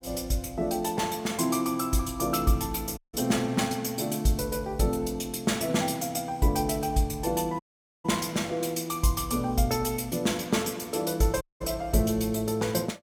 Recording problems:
dropout; at 3 s, at 7.5 s and at 11 s

